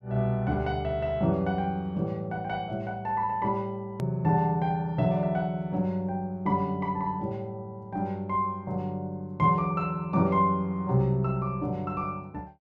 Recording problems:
edit click; at 4 s

